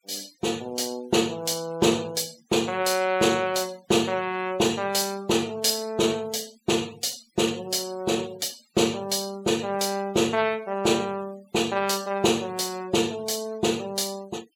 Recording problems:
noise reduction artefacts; signal-to-artefact ratio 22 dB

